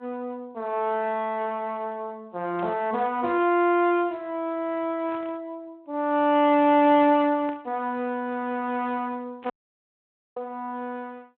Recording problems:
phone line; 190 Hz to 3.5 kHz, Speex
static burst; 4 times, first at 2.5 s; peak -13 dB vs average level
dropout; at 9.5 s for 1 s

